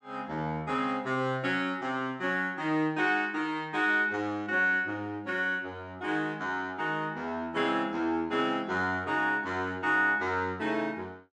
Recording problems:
none

